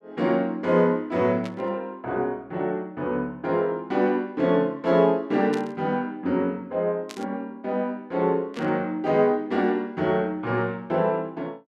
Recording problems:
static burst; 4 times, first at 1.5 s; peak -9 dB vs average level

